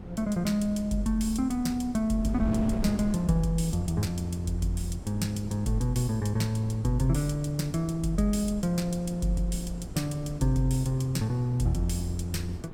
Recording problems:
wind noise; below 240 Hz, SNR 12 dB

